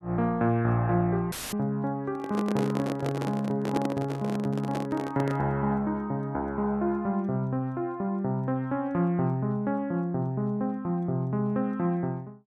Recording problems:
audio cutting out; at 1.5 s; filled with static
handling noise; from 2 to 5.5 s; peak +2 dB vs average level

